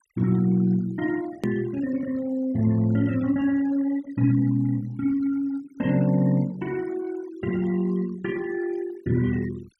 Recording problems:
noise reduction artefacts; signal-to-artefact ratio 21 dB
hard cut with a click; at 1.5 s

